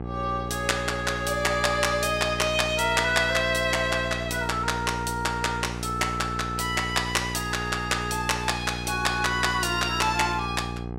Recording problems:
hum; 60 Hz, harmonics up to 1.3 kHz, SNR 9 dB

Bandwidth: 16 kHz